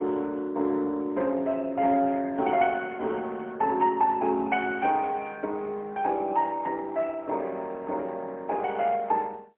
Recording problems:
telephone audio; 240 Hz to 3 kHz, AMR-NB, then MP3

